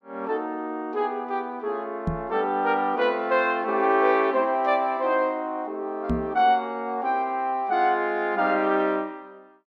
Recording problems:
microphone bump; at 2 s and at 6 s; peak +2 dB vs average level

